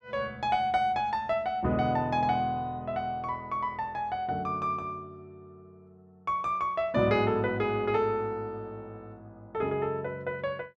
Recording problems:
none

